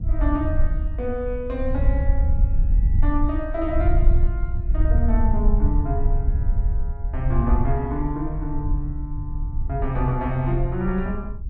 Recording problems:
wind on the microphone; below 66 Hz, SNR -3 dB

